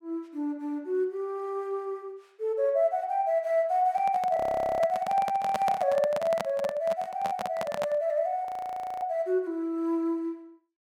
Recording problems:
microphone handling noise; from 4 to 8 s; peak +1 dB vs average level
audio freezing; at 4.5 s and at 8.5 s for 0.5 s

